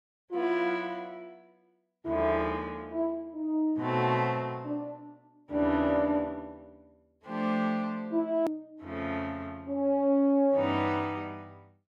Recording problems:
click at an edit; at 8.5 s

